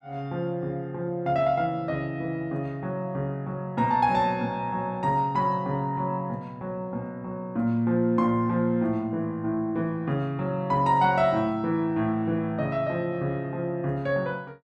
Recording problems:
none

